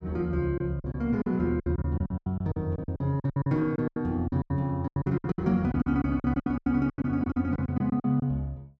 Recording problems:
packet loss; 20% of the sound replaced, filled with silence

